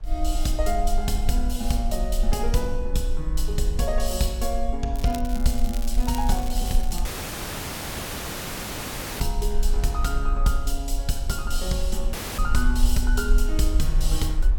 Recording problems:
low-frequency rumble; below 44 Hz, strongest tone 24 Hz, SNR 0 dB
wind noise; below 560 Hz, SNR 21 dB
crackling; from 5 to 7 s; loose cable, SNR 13 dB
dropout; at 7 s for 2 s and at 12 s

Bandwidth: 17.5 kHz